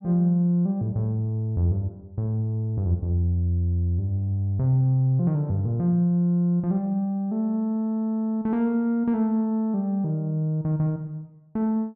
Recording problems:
none

